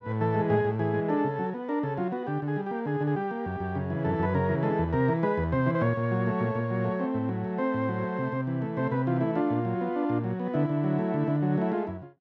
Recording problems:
none

